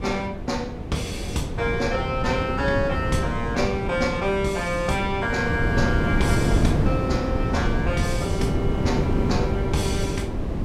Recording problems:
wind on the microphone; below 300 Hz, SNR 0 dB

